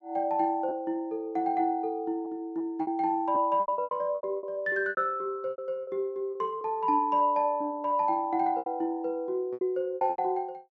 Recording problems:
treble missing; nothing above 8 kHz
packet loss; 10% of the sound replaced, filled with repeated pitch periods

